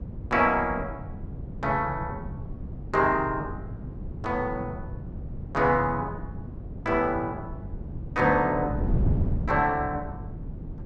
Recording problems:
wind on the microphone; below 170 Hz, SNR 8 dB

